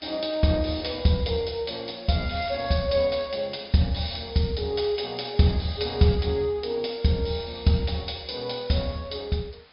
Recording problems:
treble missing; nothing above 5.5 kHz
hiss; SNR 28 dB

